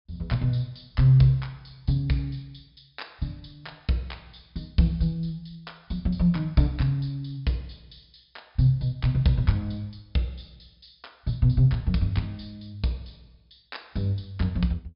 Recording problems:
low-pass filter; nothing above 5.5 kHz

